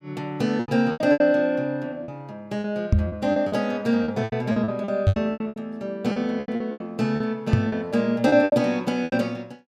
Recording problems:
lost packets; 15% of the sound replaced, filled with repeated pitch periods
knock on the microphone; at 3 s, at 5 s and at 7.5 s; peak +9 dB vs average level

